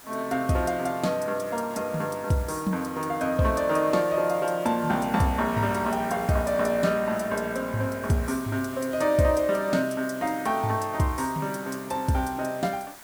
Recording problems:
hiss; SNR 18 dB

